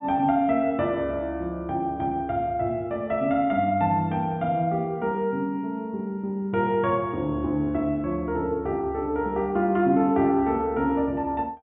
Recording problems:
low-pass filter; nothing above 4 kHz

